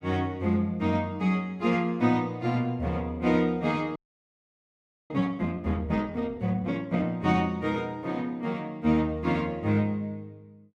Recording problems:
frozen audio; at 4 s for 1 s

